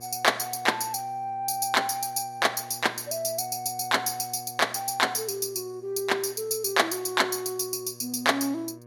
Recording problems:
electrical hum; 60 Hz, harmonics up to 1.7 kHz, SNR 23 dB

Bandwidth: 17.5 kHz